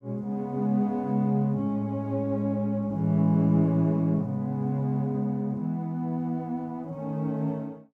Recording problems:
none

